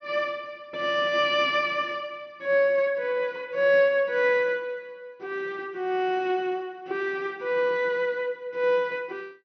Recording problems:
low-pass filter; nothing above 6 kHz

